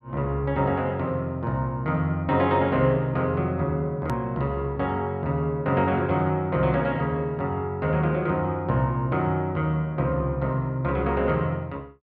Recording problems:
edit click; at 4 s

